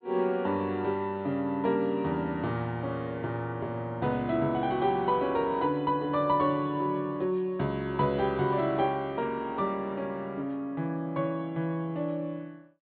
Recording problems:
low-pass filter; nothing above 4.4 kHz

